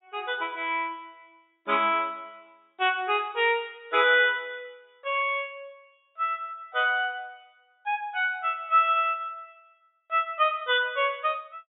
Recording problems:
treble missing; nothing above 4 kHz

